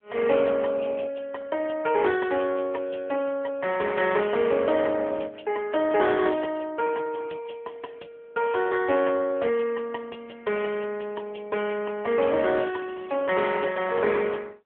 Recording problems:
telephone audio; 300 Hz to 3.4 kHz, AMR-NB

